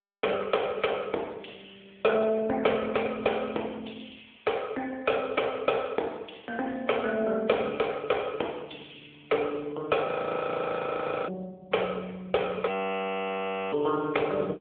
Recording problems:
phone line; 320 Hz to 3.5 kHz, AMR-NB
frozen audio; at 10 s for 1 s and at 13 s for 1 s

